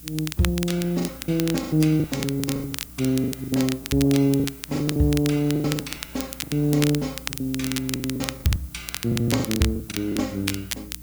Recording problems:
codec artefacts; AAC, log-spectral distance 2 dB
electrical hum; 60 Hz, harmonics up to 300 Hz, SNR 22 dB
hiss; slope +2 dB per octave, SNR 19 dB
crackle; vinyl, SNR 8 dB
lost packets; 18% of the sound replaced, filled with the last packet

